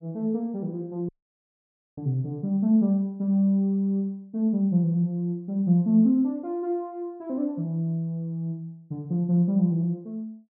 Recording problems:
dropout; at 1 s for 1 s

